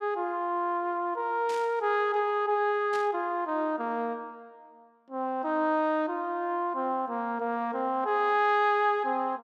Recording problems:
burst of static; at 1.5 s and at 3 s; peak -11 dB vs average level

